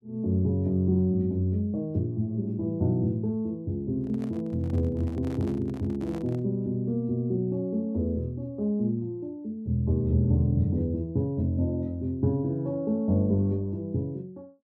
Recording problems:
microphone handling noise; from 4 to 6.5 s; peak -11 dB vs average level

